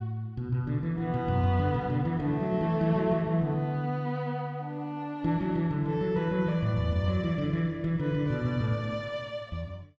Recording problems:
none

